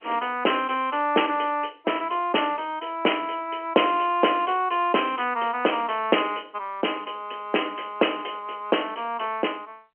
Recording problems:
phone line; 240 Hz to 3.2 kHz, G.711

